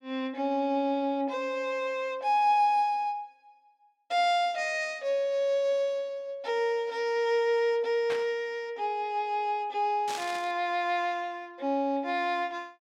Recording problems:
static burst; at 8 s and at 10 s; peak -5 dB vs average level

